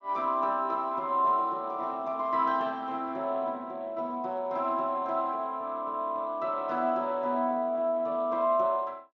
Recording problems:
lossy codec; Speex, log-spectral distance 2 dB

